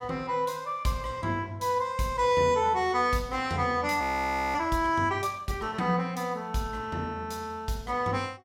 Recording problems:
audio freezing; at 4 s for 0.5 s

